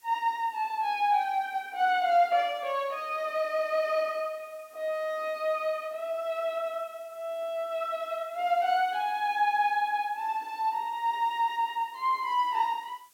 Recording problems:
hiss; slope +1 dB per octave, SNR 29 dB

